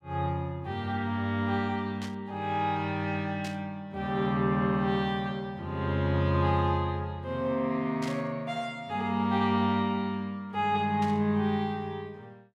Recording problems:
static burst; 4 times, first at 2 s; peak -8 dB vs average level

